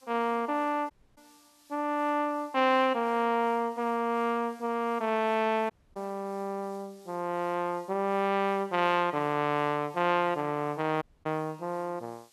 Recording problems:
background hiss; SNR 30 dB
audio cutting out; at 1 s, at 5.5 s and at 11 s

